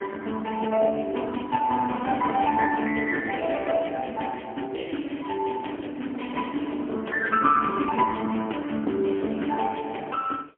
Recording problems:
phone line; 240 Hz to 3.2 kHz, AMR-NB, then MP3

